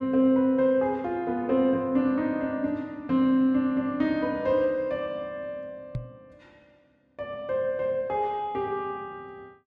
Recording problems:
microphone thump; at 6 s; peak -2 dB vs average level

